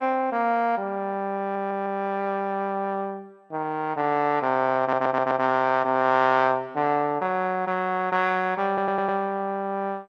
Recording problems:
lossy compression; MP2, log-spectral distance 2 dB
audio stuttering; at 1.5 s, at 5 s and at 8.5 s

